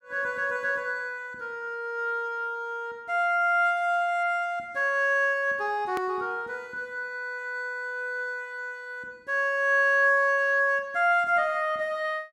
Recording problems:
hard cut with a click; at 6 s

